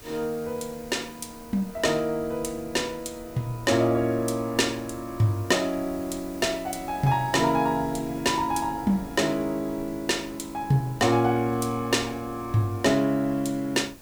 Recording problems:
hiss; slope 0 dB per octave, SNR 22 dB
wind on the microphone; below 420 Hz, SNR 21 dB

